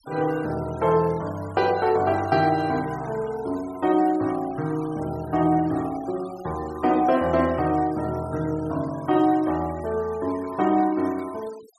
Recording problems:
noise reduction artefacts; signal-to-artefact ratio 22 dB

